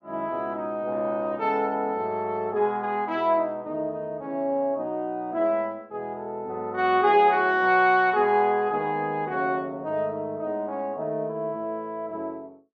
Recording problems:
none

